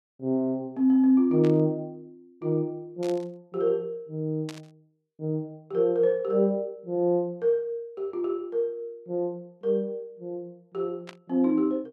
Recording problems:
burst of static; 4 times, first at 1.5 s; peak -10 dB vs average level

